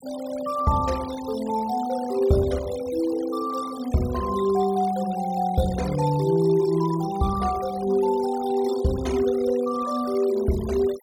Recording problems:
denoising artefacts; signal-to-artefact ratio 17 dB

